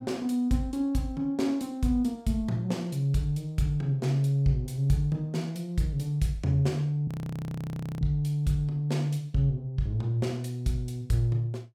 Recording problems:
frozen audio; at 7 s for 1 s

